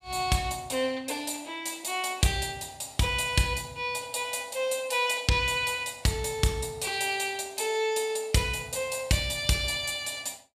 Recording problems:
none

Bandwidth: 15.5 kHz